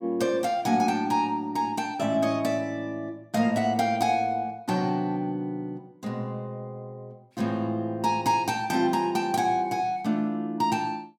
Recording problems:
none

